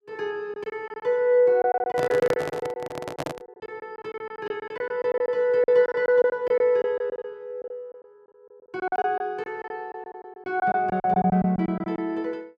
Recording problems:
lost packets; 15% of the sound replaced, filled with silence
handling noise; from 2 to 3.5 s; peak -2 dB vs average level

